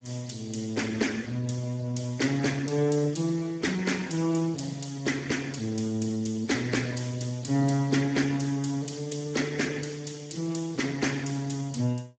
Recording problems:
codec artefacts; Speex, log-spectral distance 6 dB, nothing above 7.6 kHz

